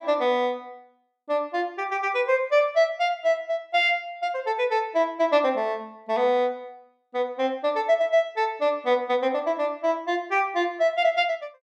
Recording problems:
none

